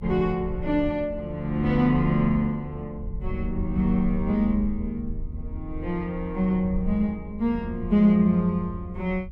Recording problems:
low-frequency rumble; below 76 Hz, SNR 11 dB

